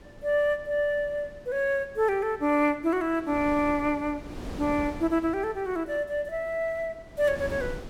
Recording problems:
wind on the microphone; below 490 Hz, SNR 16 dB

